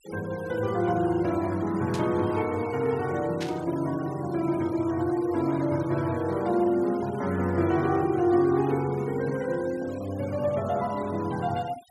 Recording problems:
noise reduction artefacts; signal-to-artefact ratio 20 dB
static burst; at 2 s and at 3.5 s; peak -5 dB vs average level

